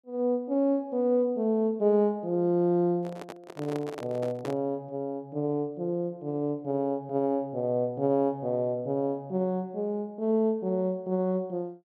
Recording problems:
handling noise; from 3 to 4.5 s; peak -5 dB vs average level

